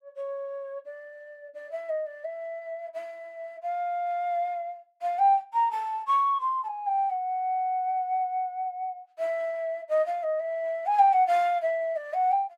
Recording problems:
none

